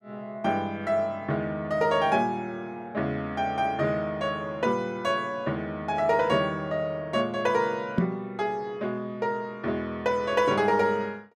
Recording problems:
knock on the microphone; at 8 s; peak +6 dB vs average level

